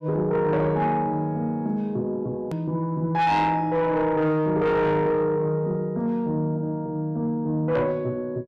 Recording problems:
distorted audio; soft clipping, signal-to-distortion ratio 11 dB
click at an edit; at 2.5 s

